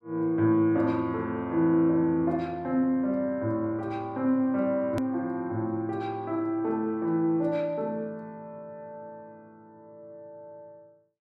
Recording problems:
hard cut with a click; at 5 s

